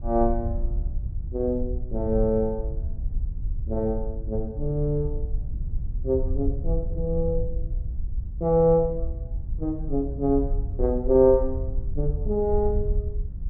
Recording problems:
treble cut off; nothing above 5.5 kHz
rumble; below 66 Hz, SNR 6 dB

